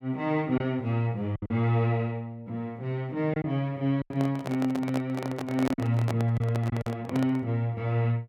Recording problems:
lost packets; 5% of the sound replaced, filled with silence
microphone handling noise; from 4 to 7.5 s; peak -1 dB vs average level

